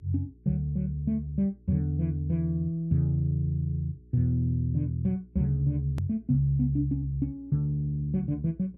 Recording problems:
electrical hum; 60 Hz, harmonics up to 420 Hz, SNR 27 dB
edit click; at 6 s

